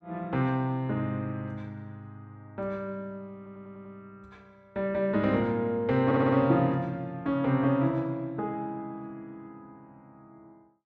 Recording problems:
audio stuttering; at 3.5 s and at 6 s

